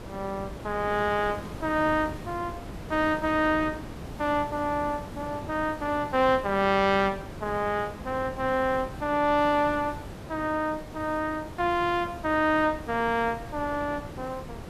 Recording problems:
background hiss; slope 0 dB per octave, SNR 28 dB
wind noise; below 570 Hz, SNR 13 dB

